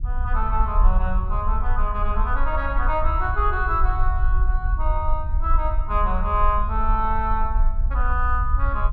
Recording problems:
rumble; below 54 Hz, strongest tone 22 Hz, SNR -1 dB

